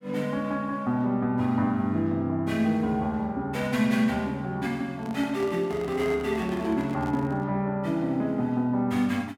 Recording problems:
microphone handling noise; from 5 to 7.5 s; peak -8 dB vs average level

